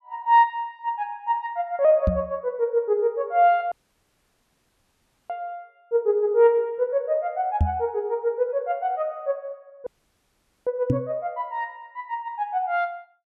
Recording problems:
microphone thump; at 2 s, at 7.5 s and at 11 s; peak +6 dB vs average level
audio cutting out; at 3.5 s for 1.5 s and at 10 s for 1 s

